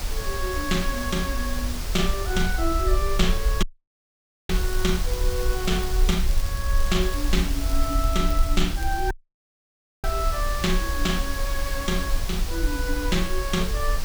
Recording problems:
background hiss; slope -2 dB per octave, SNR 6 dB
rumble; below 50 Hz, SNR 1 dB
audio cutting out; at 3.5 s for 1 s and at 9 s for 1 s
crackle; from 4.5 to 9 s; loose cable, SNR 15 dB

